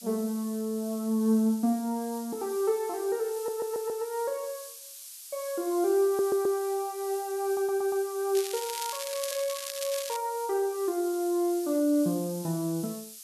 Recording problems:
hiss; slope +7 dB per octave, SNR 14 dB
stutter; at 3.5 s, at 6 s and at 7.5 s
crackle; from 8.5 to 10 s; loose cable, SNR 7 dB

